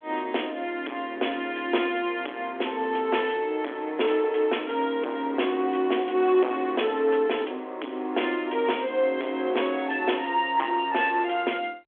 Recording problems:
telephone audio; 240 Hz to 3.4 kHz, G.726
distortion; soft clipping, signal-to-distortion ratio 9 dB

